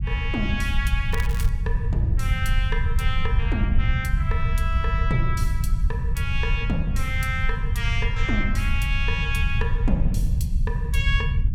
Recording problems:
rumble; below 84 Hz, SNR -4 dB
crackle; at 1 s; loose cable, SNR 12 dB

